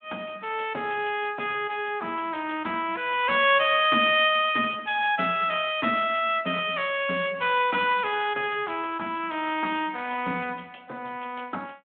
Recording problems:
phone line; 220 Hz to 3.7 kHz, Speex

